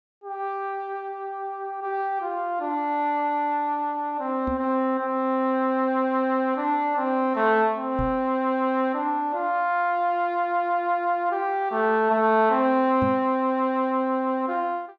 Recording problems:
treble missing; nothing above 8 kHz
knock on the microphone; at 4.5 s, at 8 s and at 13 s; peak -2 dB vs average level

